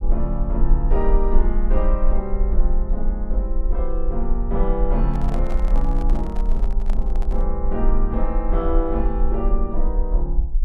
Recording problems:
rumble; below 40 Hz, strongest tone 22 Hz, SNR -4 dB
handling noise; from 5 to 7.5 s; peak -4 dB vs average level

